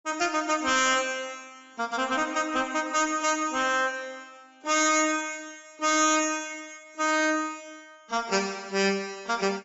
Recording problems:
lossy codec; AAC, log-spectral distance 4 dB, nothing above 7.1 kHz
distorted audio; hard clipping, uneven, signal-to-distortion ratio 11 dB

